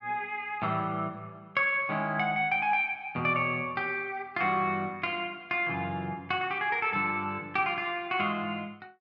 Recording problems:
none

